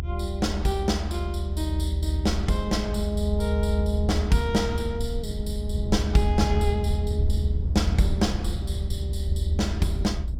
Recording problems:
low-frequency rumble; below 78 Hz, strongest tone 76 Hz, SNR 0 dB

